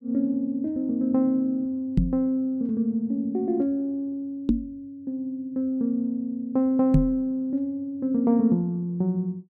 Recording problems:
microphone thump; at 2 s, at 4.5 s and at 7 s; peak +9 dB vs average level

